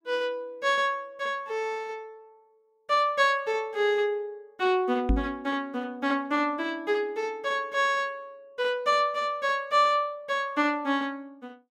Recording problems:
knock on the microphone; at 5 s; peak +5 dB vs average level

